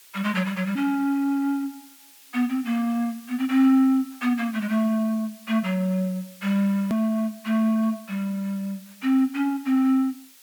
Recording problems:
hiss; slope +3 dB per octave, SNR 24 dB
edit click; at 7 s

